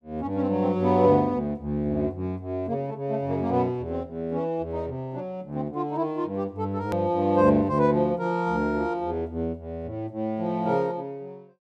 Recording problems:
edit click; at 7 s

